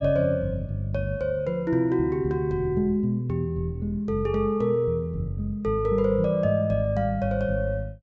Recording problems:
treble cut off; nothing above 8 kHz

